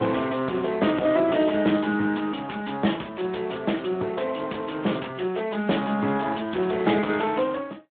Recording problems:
phone line; 170 Hz to 3.5 kHz, Speex
distortion; soft clipping, signal-to-distortion ratio 10 dB

